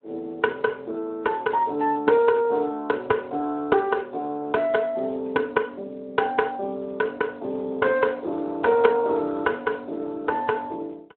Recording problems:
telephone audio; 280 Hz to 2.9 kHz, Speex

